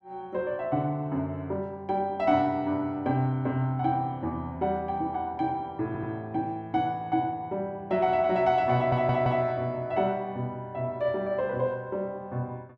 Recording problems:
audio stuttering; at 6 s and at 9 s

